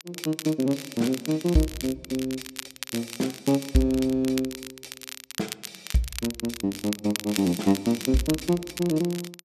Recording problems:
crackle; vinyl, SNR 10 dB

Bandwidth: 14 kHz